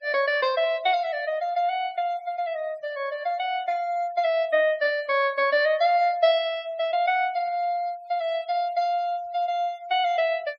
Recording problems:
noise reduction artefacts; signal-to-artefact ratio 27 dB

